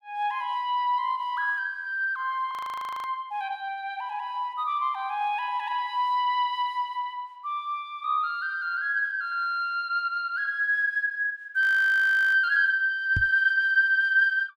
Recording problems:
audio freezing; at 2.5 s for 0.5 s and at 12 s for 0.5 s
microphone thump; at 13 s; peak 0 dB vs average level

